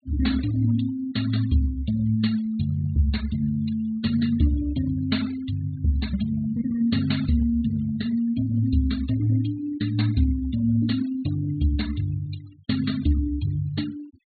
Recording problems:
treble missing; nothing above 4.4 kHz
denoising artefacts; signal-to-artefact ratio 19 dB

